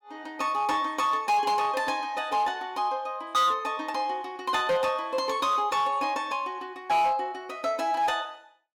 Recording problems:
distorted audio; hard clipping, signal-to-distortion ratio 11 dB

